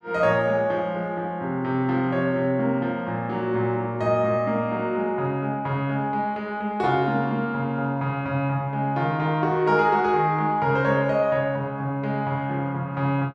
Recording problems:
none

